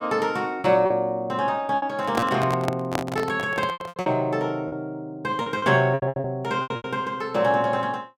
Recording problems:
lost packets; 11% of the sound replaced, filled with repeated pitch periods
handling noise; from 2 to 4 s; peak +2 dB vs average level

